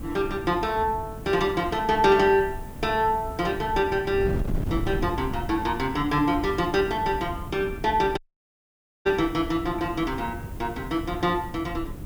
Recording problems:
background hiss; slope -1 dB per octave, SNR 25 dB
wind on the microphone; below 190 Hz, SNR 11 dB
audio cutting out; at 8 s for 1 s

